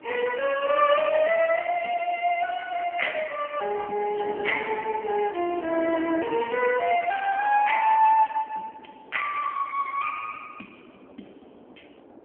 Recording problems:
telephone audio; 220 Hz to 3.1 kHz, AMR-NB
wind noise; below 640 Hz, SNR 19 dB

